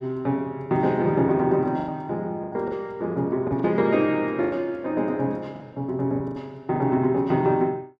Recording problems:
lost packets; 8% of the sound replaced, filled with the last packet

